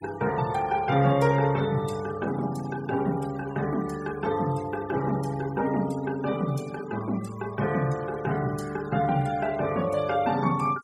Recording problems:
noise reduction artefacts; signal-to-artefact ratio 18 dB

